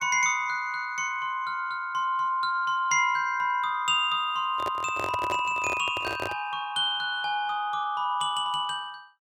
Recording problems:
microphone handling noise; from 4.5 to 6.5 s; peak -3 dB vs average level

